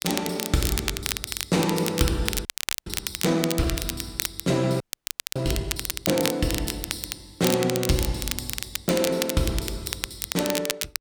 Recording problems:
crackling; vinyl, SNR 3 dB
audio freezing; at 2.5 s and at 5 s for 0.5 s

